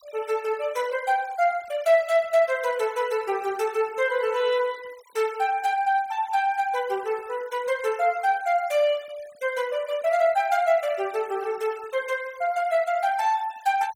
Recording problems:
noise reduction artefacts; signal-to-artefact ratio 23 dB

